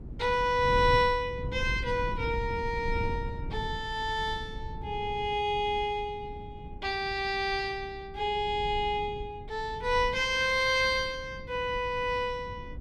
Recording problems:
wind noise; below 130 Hz, SNR 11 dB

